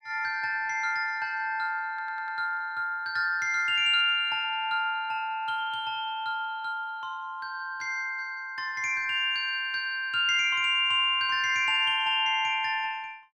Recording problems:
stutter; at 2 s

